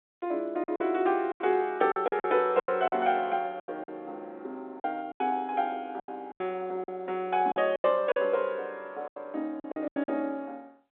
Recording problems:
telephone audio; 240 Hz to 3.6 kHz, G.711
lost packets; 12% of the sound replaced, filled with silence

